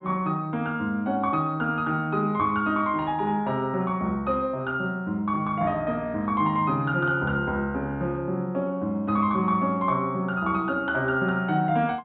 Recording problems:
treble missing; nothing above 4 kHz

